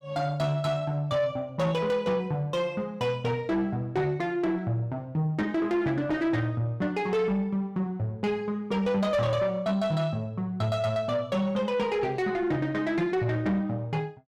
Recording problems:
distortion; soft clipping, signal-to-distortion ratio 11 dB

